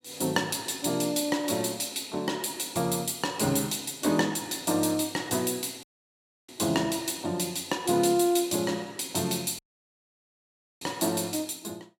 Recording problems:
dropout; at 6 s for 0.5 s and at 9.5 s for 1 s

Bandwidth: 16.5 kHz